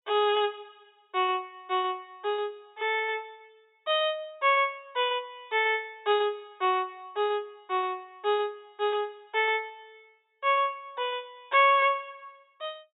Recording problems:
low-pass filter; nothing above 4 kHz

